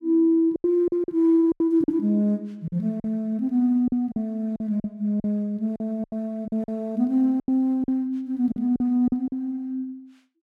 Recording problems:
lost packets; 10% of the sound replaced, filled with silence

